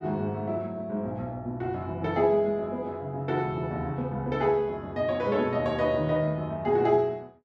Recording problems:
none

